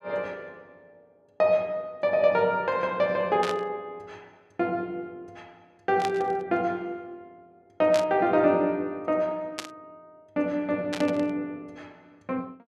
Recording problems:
static burst; 5 times, first at 3.5 s; peak -2 dB vs average level

